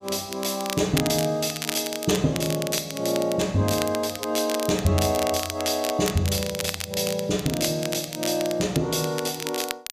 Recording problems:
crackling; vinyl, SNR 8 dB

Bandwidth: 14.5 kHz